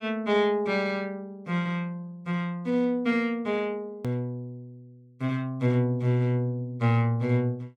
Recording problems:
hard cut with a click; at 4 s

